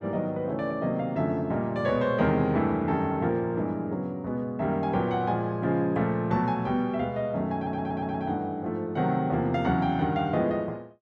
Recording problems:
stutter; at 7.5 s

